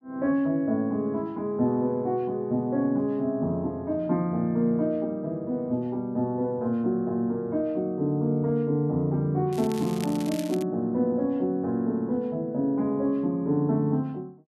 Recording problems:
crackling; from 9.5 to 11 s; loose cable, SNR 16 dB

